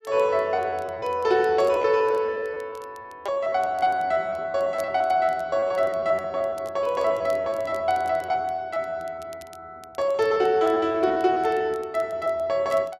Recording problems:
crackle; vinyl, SNR 30 dB
lost packets; 17% of the sound replaced, filled with repeated pitch periods

